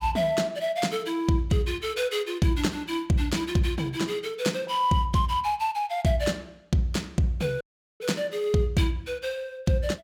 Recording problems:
audio cutting out; at 7.5 s

